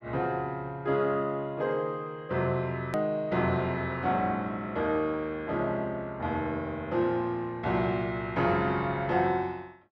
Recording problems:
click at an edit; at 3 s

